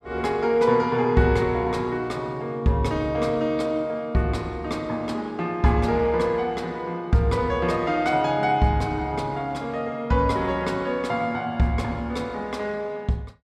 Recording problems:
none

